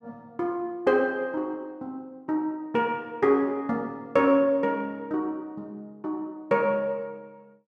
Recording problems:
none

